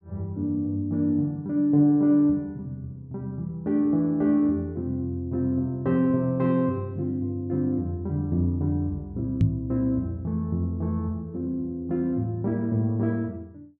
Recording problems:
knock on the microphone; at 9.5 s; peak +8 dB vs average level

